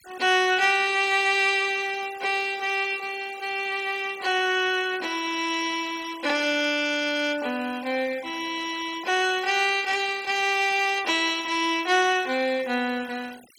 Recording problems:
denoising artefacts; signal-to-artefact ratio 19 dB

